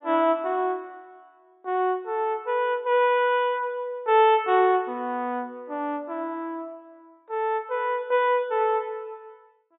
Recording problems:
treble cut off; nothing above 4 kHz

